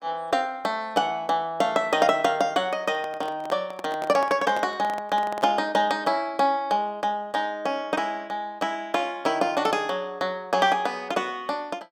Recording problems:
handling noise; from 3 to 5.5 s; peak -6 dB vs average level

